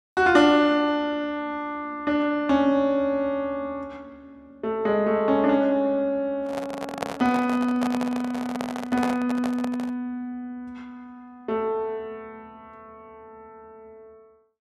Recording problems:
handling noise; from 6.5 to 10 s; peak 0 dB vs average level

